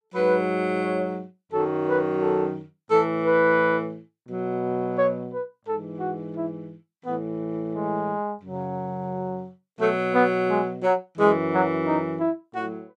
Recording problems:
none

